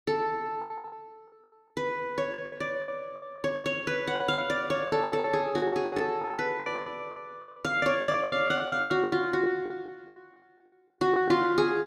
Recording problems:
lost packets; 18% of the sound replaced, filled with the last packet

